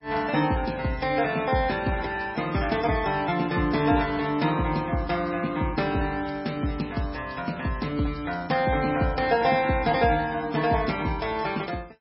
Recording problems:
codec artefacts; MP3, log-spectral distance 4 dB, nothing above 5.3 kHz

